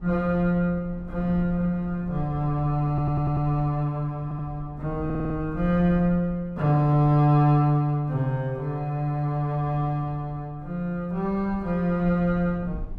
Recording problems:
low-frequency rumble; below 94 Hz, SNR 17 dB
audio stuttering; at 3 s, at 4 s and at 5 s

